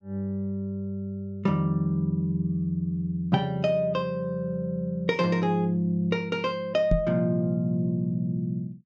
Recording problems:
low-pass filter; nothing above 8 kHz
microphone thump; at 7 s; peak +6 dB vs average level

